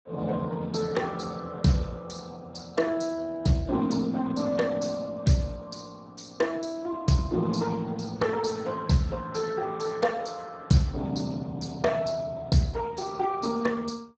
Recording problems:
lossy compression; Speex, log-spectral distance 5 dB

